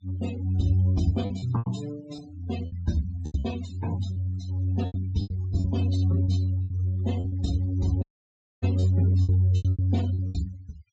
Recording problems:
low-pass filter; nothing above 8 kHz
noise reduction artefacts; signal-to-artefact ratio 18 dB
lost packets; 11% of the sound replaced, filled with repeated pitch periods
audio cutting out; at 8 s for 0.5 s

